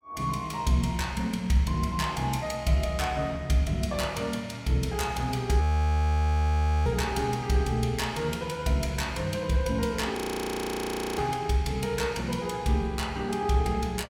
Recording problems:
frozen audio; at 5.5 s for 1.5 s and at 10 s for 1 s

